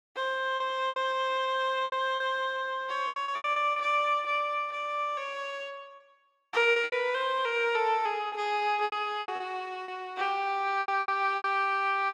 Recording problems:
lost packets; 10% of the sound replaced, filled with repeated pitch periods

